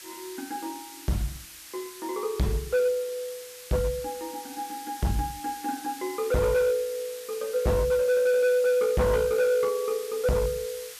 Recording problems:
distorted audio; hard clipping, signal-to-distortion ratio 6 dB
hiss; slope +3 dB per octave, SNR 15 dB

